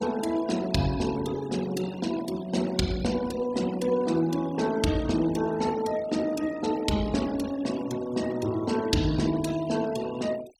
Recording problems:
noise reduction artefacts; signal-to-artefact ratio 16 dB

